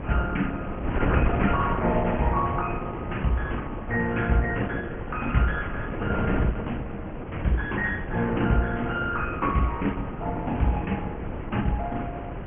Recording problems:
treble missing; nothing above 2.8 kHz
lossy codec; MP2, then Opus, log-spectral distance 3 dB
wind on the microphone; below 440 Hz, SNR 5 dB

